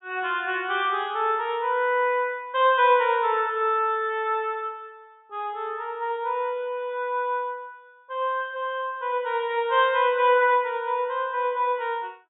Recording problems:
treble cut off; nothing above 4 kHz

